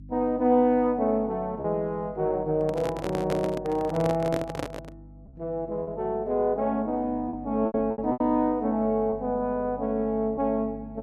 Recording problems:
hum; 50 Hz, harmonics up to 300 Hz, SNR 20 dB
lost packets; 4% of the sound replaced, filled with repeated pitch periods
handling noise; from 2.5 to 5 s; peak -1 dB vs average level

